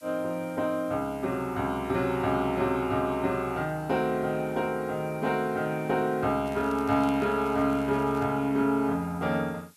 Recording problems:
background hiss; SNR 27 dB
crackle; from 6.5 to 8.5 s; loose cable, SNR 26 dB

